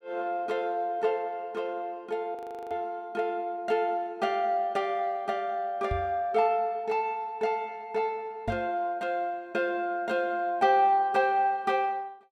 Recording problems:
audio freezing; at 2.5 s
microphone bump; at 2.5 s, at 6 s and at 8.5 s; peak 0 dB vs average level

